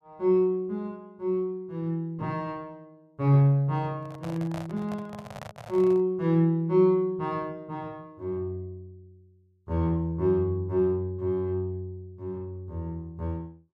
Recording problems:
handling noise; from 4 to 6 s; peak -8 dB vs average level

